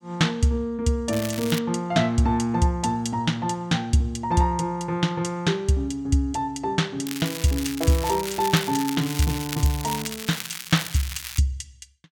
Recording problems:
crackling; at 1 s and from 7 to 11 s; loose cable, SNR 9 dB

